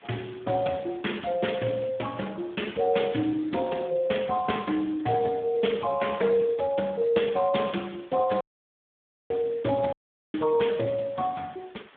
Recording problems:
telephone audio; 150 Hz to 3.5 kHz, Speex
background hiss; SNR 27 dB
audio cutting out; at 8.5 s for 1 s and at 10 s

